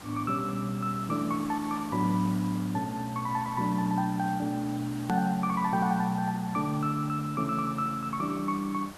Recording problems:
hiss; slope -4 dB per octave, SNR 16 dB
click at an edit; at 5 s

